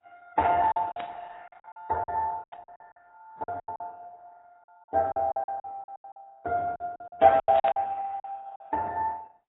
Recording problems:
codec artefacts; Opus, then AAC, log-spectral distance 3 dB, nothing above 3.5 kHz
lost packets; 16% of the sound replaced, filled with silence
static burst; at 1 s, at 2.5 s and at 7.5 s; peak -8 dB vs average level

